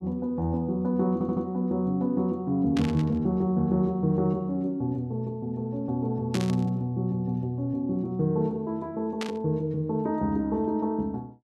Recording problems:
audio stuttering; at 1 s
burst of static; at 3 s, at 6.5 s and at 9 s; peak -3 dB vs average level

